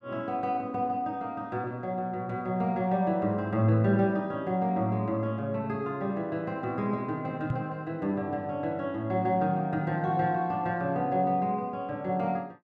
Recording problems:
microphone thump; at 7.5 s; peak +2 dB vs average level

